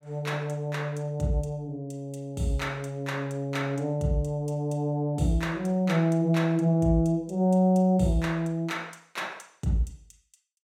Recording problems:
none

